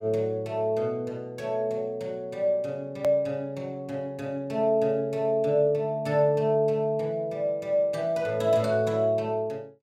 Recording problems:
edit click; at 3 s

